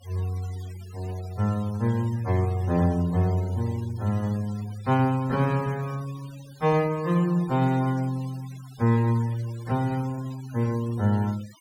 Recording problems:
denoising artefacts; signal-to-artefact ratio 22 dB

